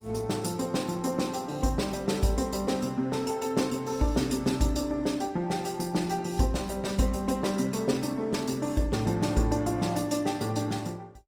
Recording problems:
codec artefacts; Opus, log-spectral distance 4 dB, nothing above 19 kHz

